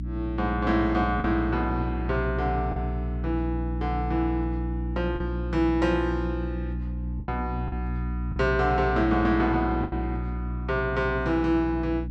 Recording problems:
hum; 60 Hz, harmonics up to 300 Hz, SNR 4 dB
packet loss; 3% of the sound replaced, filled with the last packet

